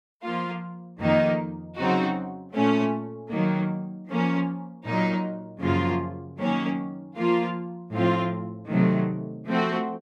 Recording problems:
none

